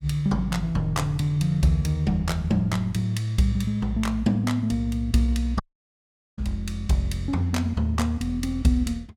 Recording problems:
audio cutting out; at 5.5 s for 1 s

